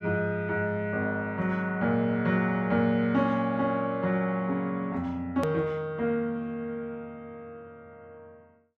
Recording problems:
click at an edit; at 5.5 s

